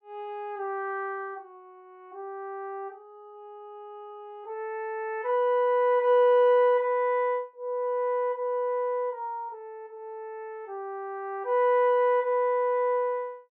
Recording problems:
none

